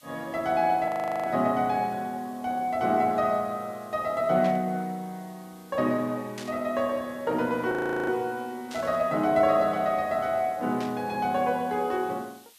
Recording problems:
background hiss; slope +3 dB per octave, SNR 27 dB
frozen audio; at 1 s and at 7.5 s
static burst; 4 times, first at 4.5 s; peak -9 dB vs average level

